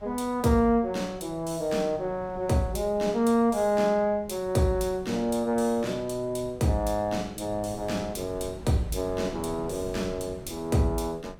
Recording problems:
wind on the microphone; below 270 Hz, SNR 19 dB

